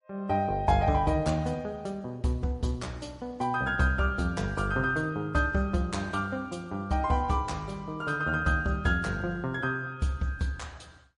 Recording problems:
codec artefacts; MP3, log-spectral distance 2 dB, nothing above 10.4 kHz

